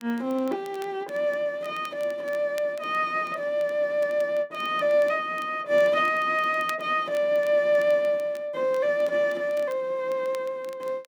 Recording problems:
crackle; vinyl, SNR 26 dB

